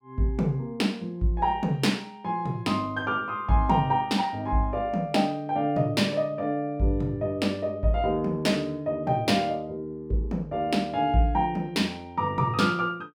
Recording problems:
none

